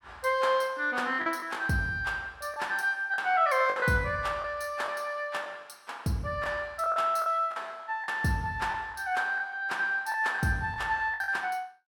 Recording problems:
packet loss; 6% of the sound replaced, filled with the last packet

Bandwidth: 17.5 kHz